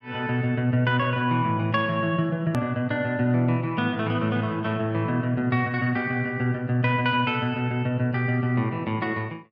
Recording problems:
hard cut with a click; at 2.5 s

